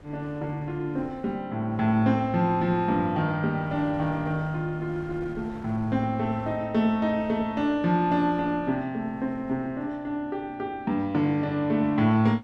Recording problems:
wind on the microphone; below 490 Hz, SNR 22 dB

